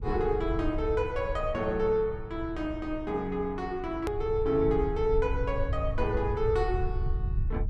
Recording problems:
low-frequency rumble; below 86 Hz, SNR 6 dB
hard cut with a click; at 4 s

